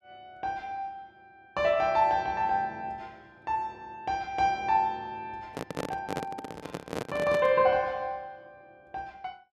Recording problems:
handling noise; from 5.5 to 7.5 s; peak 0 dB vs average level

